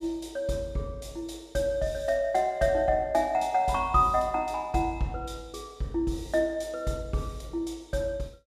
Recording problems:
none

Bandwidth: 14.5 kHz